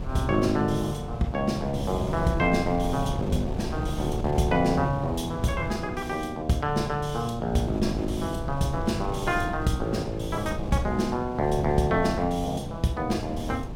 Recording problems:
wind on the microphone; below 260 Hz, SNR 7 dB

